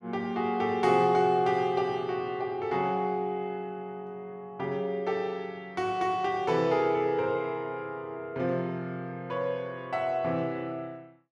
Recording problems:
none

